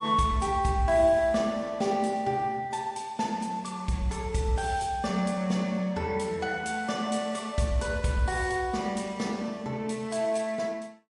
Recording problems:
lossy compression; MP3, log-spectral distance 2 dB, nothing above 10.7 kHz

